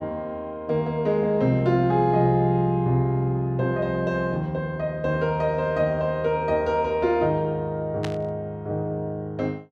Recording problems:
static burst; at 8 s; peak -5 dB vs average level

